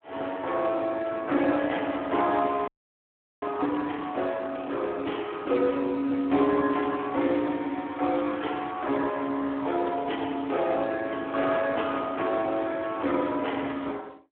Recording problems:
telephone audio; 240 Hz to 3.3 kHz, Speex
frozen audio; at 2.5 s for 0.5 s

